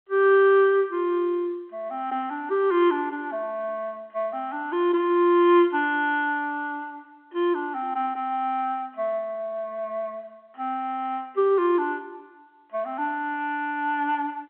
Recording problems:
telephone audio; 300 Hz to 3.5 kHz, G.711

